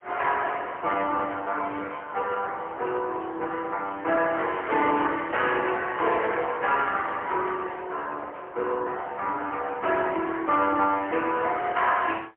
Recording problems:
phone line; 340 Hz to 3.3 kHz, AMR-NB, then MP3

